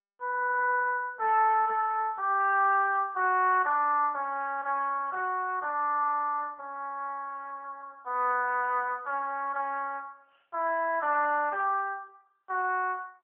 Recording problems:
phone line; 320 Hz to 3 kHz, AMR-NB

